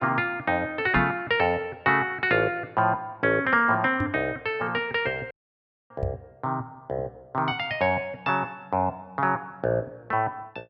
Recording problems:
microphone thump; at 1 s, at 4 s and at 6 s; peak +2 dB vs average level
audio cutting out; at 5.5 s for 0.5 s

